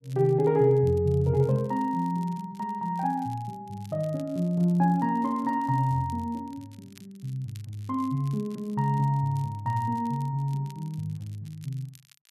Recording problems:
crackling; vinyl, SNR 29 dB

